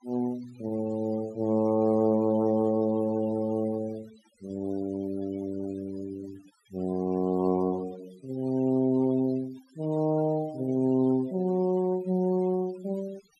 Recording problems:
noise reduction artefacts; signal-to-artefact ratio 22 dB

